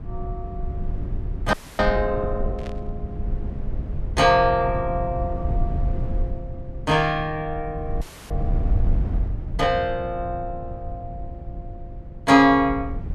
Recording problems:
low-frequency rumble; below 90 Hz, SNR 8 dB
audio freezing; at 1.5 s and at 8 s
burst of static; at 2.5 s; peak -16 dB vs average level

